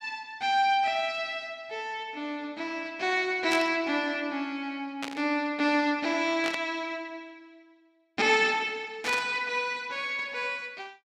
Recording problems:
static burst; 4 times, first at 3.5 s; peak 0 dB vs average level

